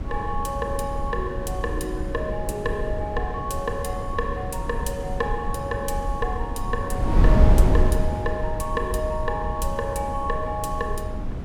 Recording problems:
wind noise; below 100 Hz, SNR -1 dB

